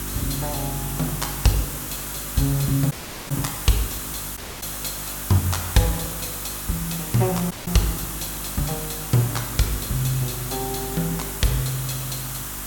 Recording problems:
electrical hum; 50 Hz, harmonics up to 400 Hz, SNR 13 dB
background hiss; SNR 4 dB
crackling; vinyl, SNR 30 dB
audio cutting out; at 3 s, at 4.5 s and at 7.5 s

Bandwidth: 17.5 kHz